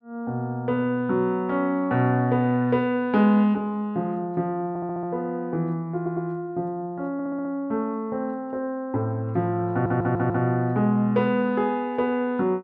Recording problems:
stutter; 4 times, first at 4.5 s

